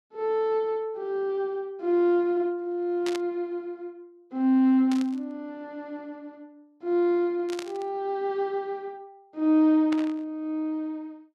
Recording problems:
static burst; 4 times, first at 3 s; peak -6 dB vs average level

